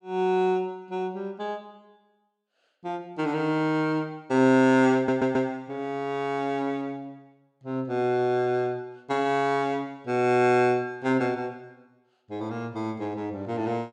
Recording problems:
stutter; at 5 s

